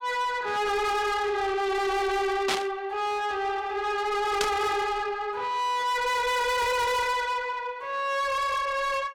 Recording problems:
distorted audio; soft clipping, signal-to-distortion ratio 6 dB
static burst; at 2.5 s and at 4.5 s; peak +4 dB vs average level

